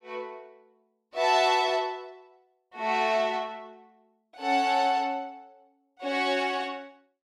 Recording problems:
none

